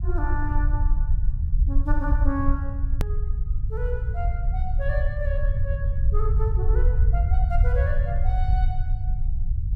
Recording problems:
low-frequency rumble; below 70 Hz, SNR -9 dB
edit click; at 3 s

